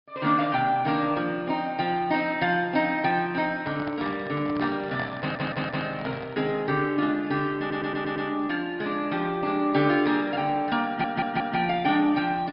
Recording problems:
treble missing; nothing above 5 kHz
codec artefacts; Opus, log-spectral distance 3 dB
microphone handling noise; from 3.5 to 6.5 s; peak -5 dB vs average level
stutter; at 5 s, at 7.5 s and at 11 s

